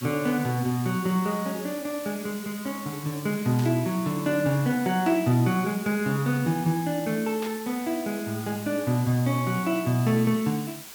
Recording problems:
background hiss; slope +1 dB per octave, SNR 14 dB
burst of static; at 3.5 s, at 5 s and at 7.5 s; peak -9 dB vs average level

